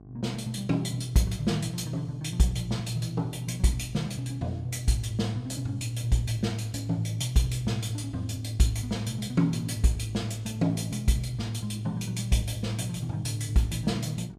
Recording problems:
hum; 50 Hz, harmonics up to 1.1 kHz, SNR 21 dB

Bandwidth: 15.5 kHz